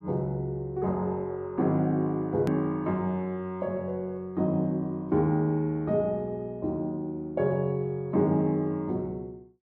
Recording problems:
edit click; at 2.5 s

